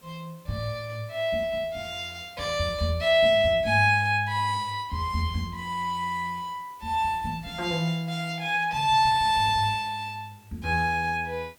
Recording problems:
hiss; slope -3 dB per octave, SNR 30 dB

